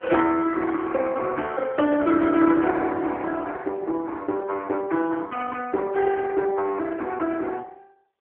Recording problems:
telephone audio; 260 Hz to 3.3 kHz, AMR-NB

